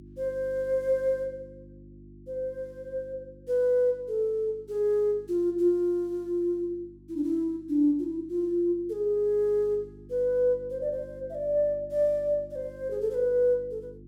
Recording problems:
hum; 50 Hz, harmonics up to 350 Hz, SNR 22 dB

